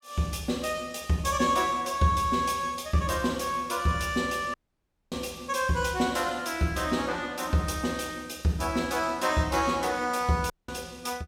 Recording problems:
audio cutting out; at 4.5 s for 0.5 s and at 11 s

